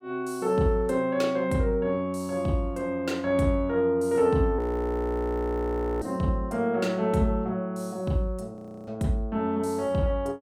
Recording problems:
frozen audio; at 4.5 s for 1.5 s and at 8.5 s

